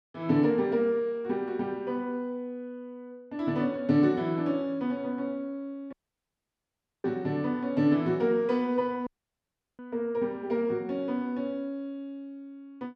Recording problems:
dropout; at 6 s for 1 s and at 9 s for 0.5 s

